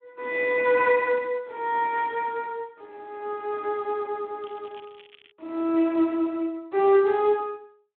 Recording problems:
phone line; 280 Hz to 3.4 kHz, Speex
crackling; at 4.5 s; loose cable, SNR 27 dB

